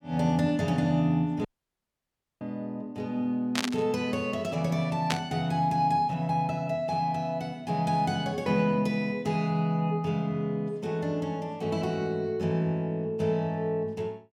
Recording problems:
dropout; at 1.5 s for 1 s
burst of static; at 3.5 s and at 5 s; peak +4 dB vs average level

